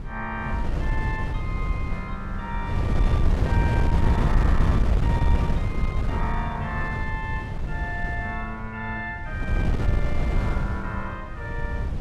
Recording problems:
wind on the microphone; below 130 Hz, SNR -7 dB

